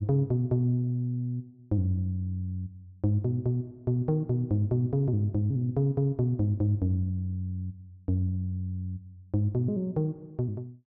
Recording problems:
none

